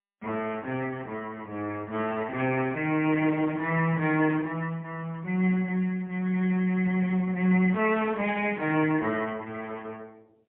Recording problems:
phone line; 150 Hz to 3.5 kHz, AMR-NB, then MP3

